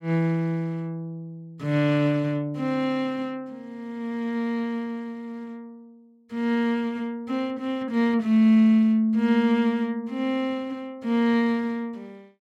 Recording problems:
none

